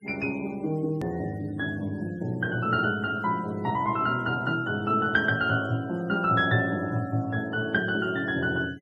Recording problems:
noise reduction artefacts; signal-to-artefact ratio 26 dB
click at an edit; at 1 s

